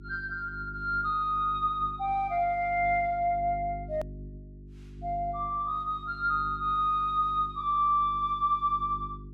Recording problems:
electrical hum; 50 Hz, harmonics up to 400 Hz, SNR 16 dB
hard cut with a click; at 4 s

